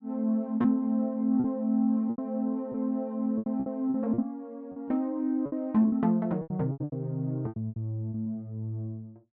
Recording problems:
lost packets; 11% of the sound replaced, filled with repeated pitch periods

